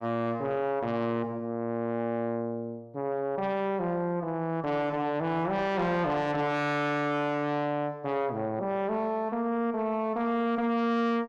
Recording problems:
distortion; soft clipping, signal-to-distortion ratio 6 dB

